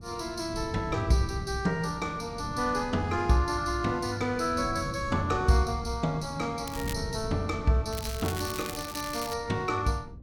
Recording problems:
wind noise; below 190 Hz, SNR 11 dB
crackle; at 6.5 s and from 8 to 9.5 s; loose cable, SNR 10 dB

